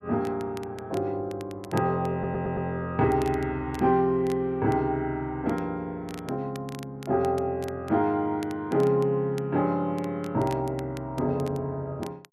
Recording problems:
crackle; vinyl, SNR 22 dB
audio stuttering; at 2 s

